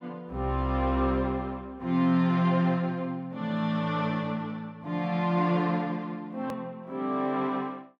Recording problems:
hard cut with a click; at 6.5 s

